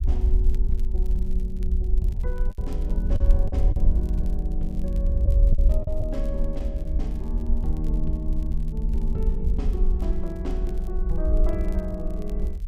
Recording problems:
low-frequency rumble; below 56 Hz, SNR -7 dB
crackling; vinyl, SNR 25 dB
packet loss; 3% of the sound replaced, filled with the last packet

